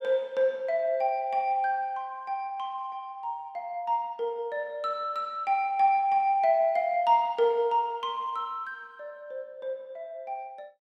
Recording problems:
none

